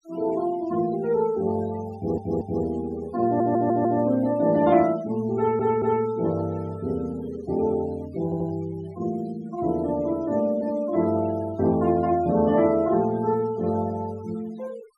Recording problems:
noise reduction artefacts; signal-to-artefact ratio 22 dB
audio stuttering; 4 times, first at 2 s

